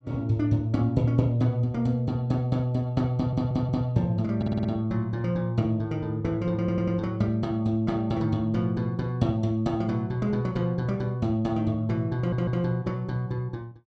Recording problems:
audio stuttering; 4 times, first at 3 s

